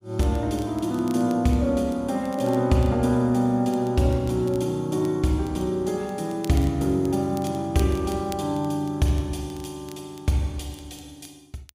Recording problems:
crackling; vinyl, SNR 25 dB

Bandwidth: 15.5 kHz